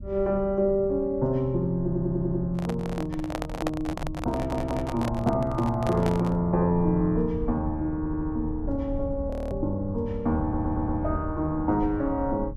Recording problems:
low-frequency rumble; below 110 Hz, SNR 11 dB
audio stuttering; 4 times, first at 2 s
microphone handling noise; from 2.5 to 6.5 s; peak +1 dB vs average level
frozen audio; at 9.5 s

